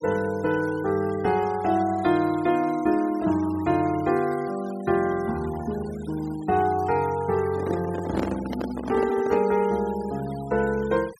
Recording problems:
noise reduction artefacts; signal-to-artefact ratio 20 dB
microphone handling noise; from 7.5 to 9.5 s; peak -1 dB vs average level

